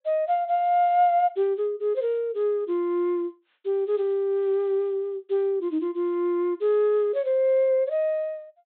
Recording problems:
low-pass filter; nothing above 4 kHz

